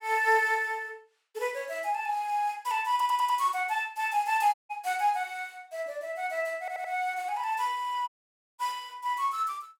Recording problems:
audio stuttering; at 3 s and at 6.5 s
dropout; at 4.5 s and at 8 s for 0.5 s

